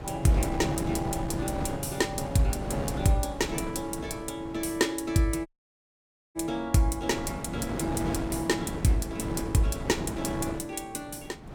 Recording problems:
wind noise; below 490 Hz, SNR 6 dB
dropout; at 5.5 s for 1 s

